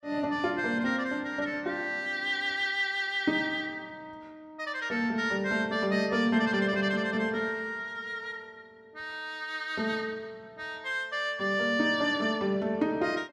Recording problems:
none

